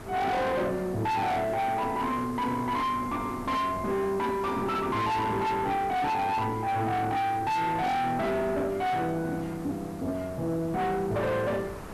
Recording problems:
distorted audio; soft clipping, signal-to-distortion ratio 5 dB
background hiss; slope +2 dB per octave, SNR 26 dB
wind on the microphone; below 1.2 kHz, SNR 17 dB

